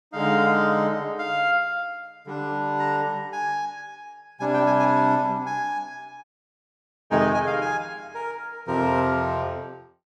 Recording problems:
dropout; at 6 s for 1 s

